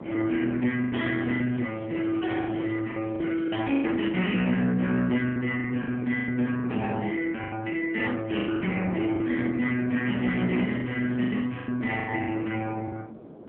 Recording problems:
telephone audio; 170 Hz to 3.3 kHz, AMR-NB
distorted audio; soft clipping, signal-to-distortion ratio 14 dB
wind on the microphone; below 500 Hz, SNR 14 dB
packet loss; 9% of the sound replaced, filled with the last packet
crackle; from 1 to 3 s, at 3 s and from 10 to 12 s; loose cable, SNR 27 dB

